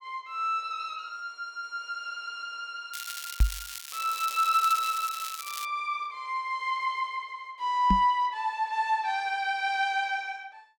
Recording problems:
crackle; from 3 to 5.5 s; loose cable, SNR 9 dB
knock on the microphone; at 3.5 s and at 8 s; peak +9 dB vs average level

